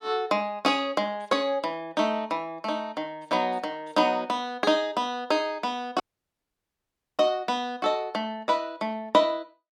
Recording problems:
audio cutting out; at 6 s for 1 s

